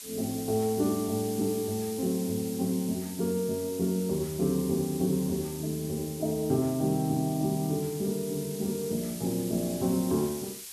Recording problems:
background hiss; slope +3 dB per octave, SNR 11 dB

